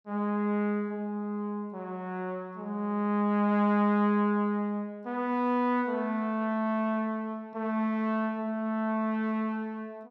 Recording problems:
none

